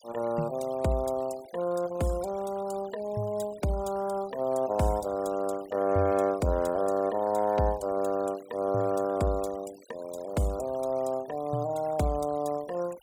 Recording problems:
denoising artefacts; signal-to-artefact ratio 21 dB

